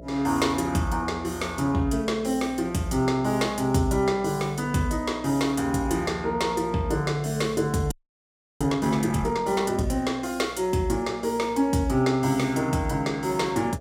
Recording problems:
hum; 60 Hz, harmonics up to 660 Hz, SNR 19 dB
frozen audio; at 8 s for 0.5 s

